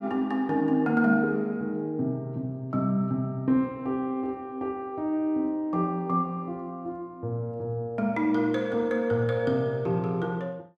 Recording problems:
none

